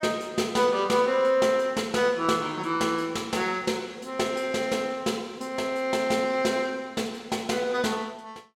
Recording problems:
none

